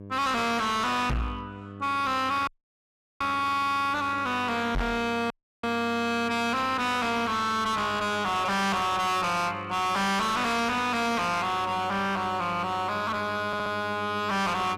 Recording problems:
distortion; hard clipping, uneven, signal-to-distortion ratio 5 dB
hum; 50 Hz, harmonics up to 1.1 kHz, SNR 16 dB
microphone thump; at 1 s and at 5 s; peak +1 dB vs average level
audio cutting out; at 2.5 s for 0.5 s and at 5.5 s
audio stuttering; at 13 s

